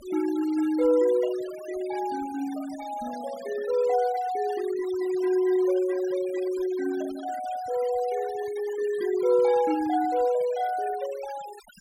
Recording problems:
denoising artefacts; signal-to-artefact ratio 17 dB

